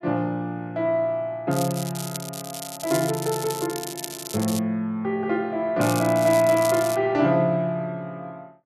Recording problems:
crackle; from 1.5 to 4.5 s and from 6 to 7 s; loose cable, SNR 10 dB

